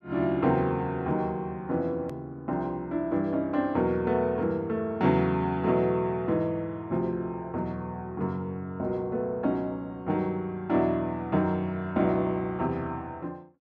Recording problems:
edit click; at 2 s

